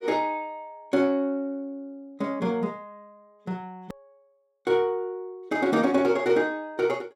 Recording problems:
edit click; at 4 s

